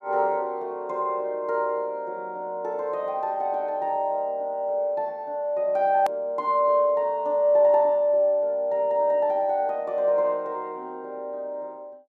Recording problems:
click at an edit; at 6 s

